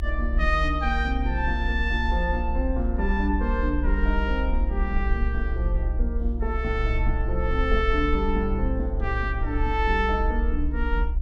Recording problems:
hum; 60 Hz, harmonics up to 1 kHz, SNR 21 dB
rumble; below 62 Hz, SNR 0 dB

